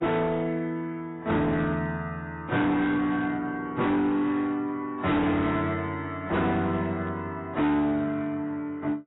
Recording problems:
lossy codec; AAC, log-spectral distance 2 dB, nothing above 3.8 kHz
distortion; hard clipping, signal-to-distortion ratio 7 dB

